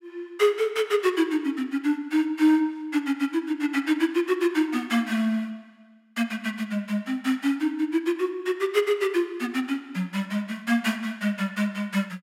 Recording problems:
none

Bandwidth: 16 kHz